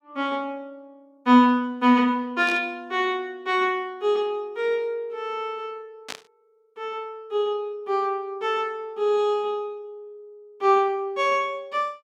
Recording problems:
static burst; at 2.5 s and at 6 s; peak -6 dB vs average level

